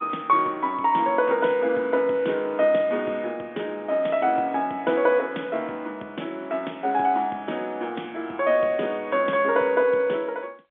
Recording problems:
telephone audio; 220 Hz to 3.6 kHz, G.711

